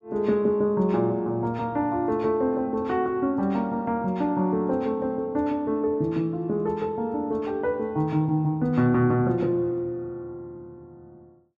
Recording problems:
none

